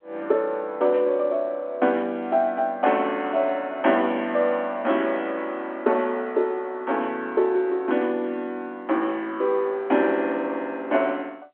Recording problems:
telephone audio; 220 Hz to 3.5 kHz, G.711

